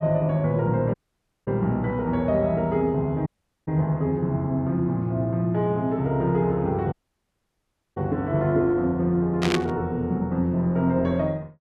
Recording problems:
dropout; at 1 s for 0.5 s, at 3.5 s and at 7 s for 1 s
burst of static; at 9.5 s; peak +1 dB vs average level

